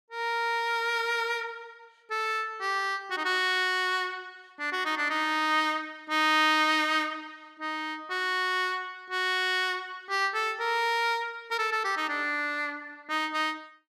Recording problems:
none

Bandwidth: 14.5 kHz